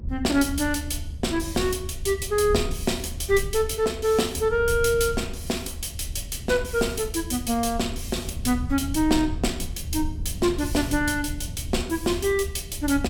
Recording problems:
low-frequency rumble; below 86 Hz, SNR 10 dB

